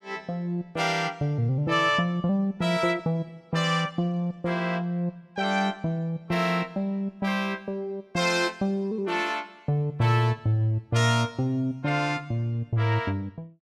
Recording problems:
none

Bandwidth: 14.5 kHz